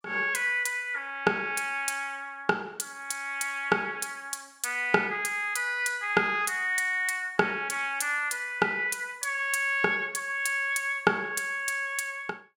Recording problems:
none

